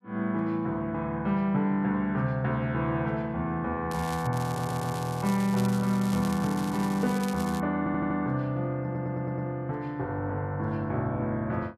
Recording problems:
crackle; at 4 s and from 4.5 to 7.5 s; loose cable, SNR 15 dB
stutter; at 4.5 s, at 8 s and at 9 s

